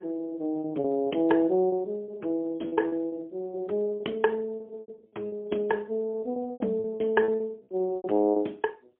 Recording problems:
telephone audio; 260 Hz to 3.3 kHz, AMR-NB, then MP3
lost packets; 11% of the sound replaced, filled with repeated pitch periods

